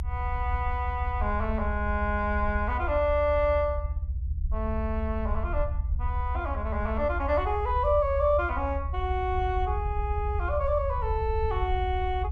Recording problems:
low-frequency rumble; below 76 Hz, SNR 3 dB

